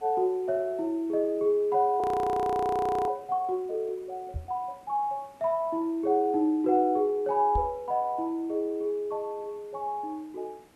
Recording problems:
hiss; slope -5 dB per octave, SNR 30 dB
frozen audio; at 2 s for 1 s
knock on the microphone; at 4.5 s and at 7.5 s; peak -1 dB vs average level

